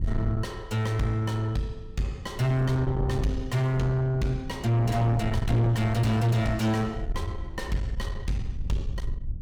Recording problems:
distorted audio; soft clipping, signal-to-distortion ratio 6 dB
wind noise; below 110 Hz, SNR 8 dB

